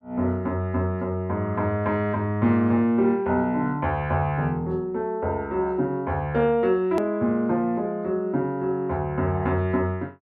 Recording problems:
edit click; at 7 s

